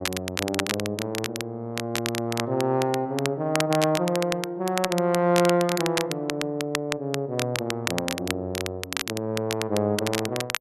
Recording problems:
crackle; vinyl, SNR 5 dB

